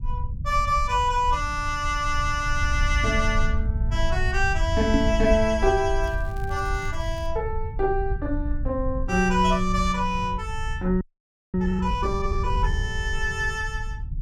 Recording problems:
low-frequency rumble; below 78 Hz, SNR 5 dB
microphone thump; at 5 s; peak +6 dB vs average level
crackling; from 6 to 7.5 s; loose cable, SNR 27 dB
audio freezing; at 11 s for 0.5 s

